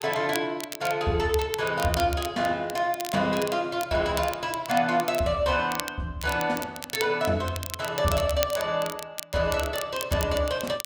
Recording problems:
crackling; vinyl, SNR 11 dB

